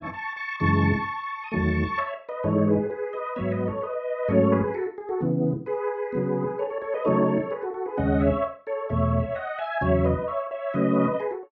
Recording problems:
none

